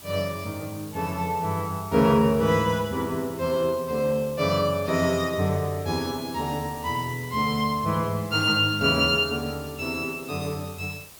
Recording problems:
hiss; slope -1 dB per octave, SNR 19 dB

